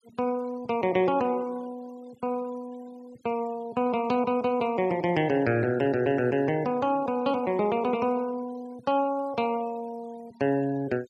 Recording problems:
noise reduction artefacts; signal-to-artefact ratio 24 dB

